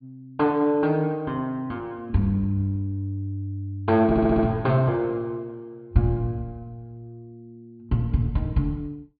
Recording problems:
treble missing; nothing above 4.7 kHz
audio stuttering; at 4 s

